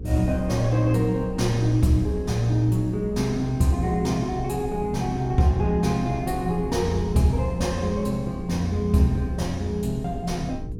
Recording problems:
hum; 60 Hz, harmonics up to 480 Hz, SNR 14 dB
rumble; below 110 Hz, SNR 16 dB

